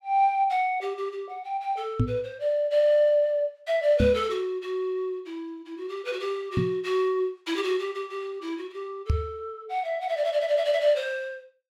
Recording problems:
knock on the microphone; 4 times, first at 2 s; peak +6 dB vs average level

